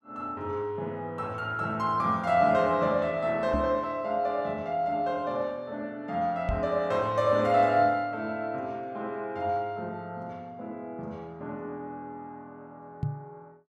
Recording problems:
microphone bump; at 3.5 s, at 6.5 s and at 13 s; peak +2 dB vs average level

